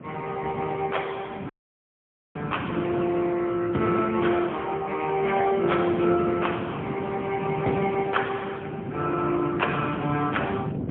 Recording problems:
phone line; 190 Hz to 3.4 kHz, AMR-NB, then MP3
wind noise; below 350 Hz, SNR 9 dB
dropout; at 1.5 s for 1 s

